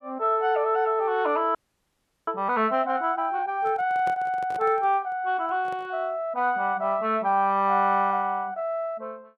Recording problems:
audio freezing; at 1.5 s for 0.5 s
handling noise; from 3.5 to 6 s; peak -10 dB vs average level

